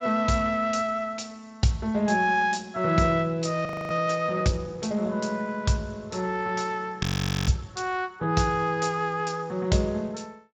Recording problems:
lossy compression; Speex, log-spectral distance 4 dB, nothing above 20.1 kHz
audio freezing; at 3.5 s and at 7 s

